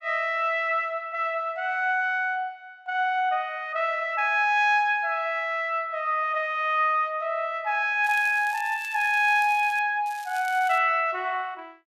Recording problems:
crackle; from 8 to 10 s and at 10 s; loose cable, SNR 21 dB

